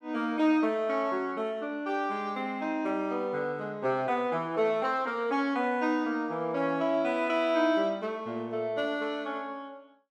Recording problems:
none

